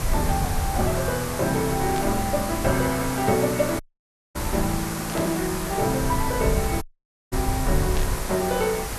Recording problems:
background hiss; slope -4 dB per octave, SNR 6 dB
rumble; below 80 Hz, SNR 7 dB
burst of static; at 2 s, at 5 s and at 8 s; peak -6 dB vs average level
audio cutting out; at 4 s for 0.5 s and at 7 s for 0.5 s

